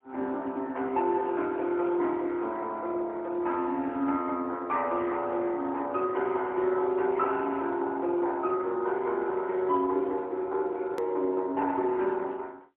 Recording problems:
phone line; 240 Hz to 3.6 kHz, AMR-NB, then MP3
edit click; at 11 s

